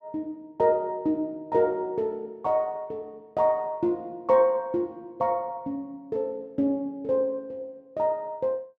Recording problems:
none

